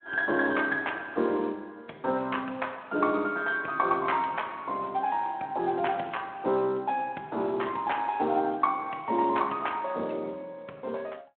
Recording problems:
telephone audio; 240 Hz to 3.3 kHz, Speex

